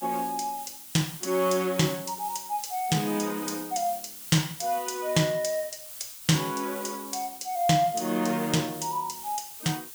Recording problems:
hiss; slope +3 dB per octave, SNR 11 dB

